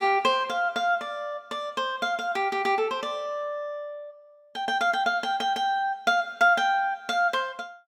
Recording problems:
none

